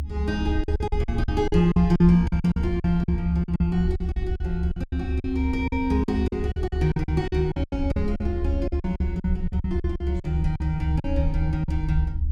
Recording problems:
hum; 50 Hz, harmonics up to 300 Hz, SNR 21 dB
low-frequency rumble; below 74 Hz, strongest tone 72 Hz, SNR 3 dB
lost packets; 16% of the sound replaced, filled with silence

